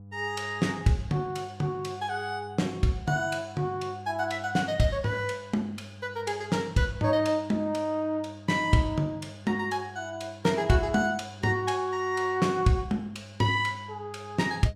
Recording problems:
electrical hum; 50 Hz, harmonics up to 500 Hz, SNR 18 dB

